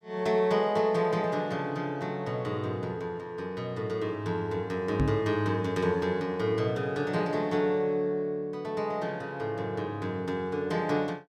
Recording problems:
knock on the microphone; at 5 s; peak +6 dB vs average level

